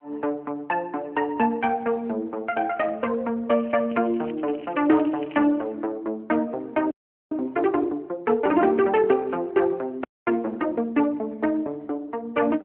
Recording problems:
telephone audio; 190 Hz to 3.1 kHz, AMR-NB
crackling; from 3.5 to 5.5 s; loose cable, SNR 23 dB
audio freezing; at 7 s and at 10 s

